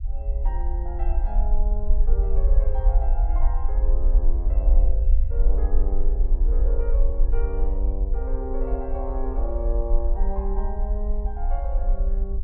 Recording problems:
rumble; below 48 Hz, SNR -10 dB

